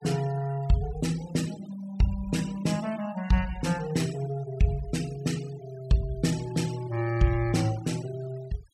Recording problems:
denoising artefacts; signal-to-artefact ratio 18 dB

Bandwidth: 16 kHz